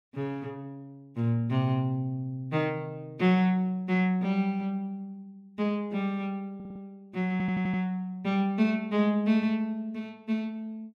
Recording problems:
audio stuttering; at 6.5 s and at 7.5 s

